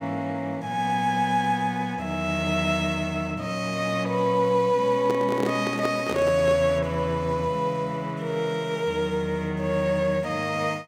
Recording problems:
microphone handling noise; from 5 to 6.5 s; peak 0 dB vs average level

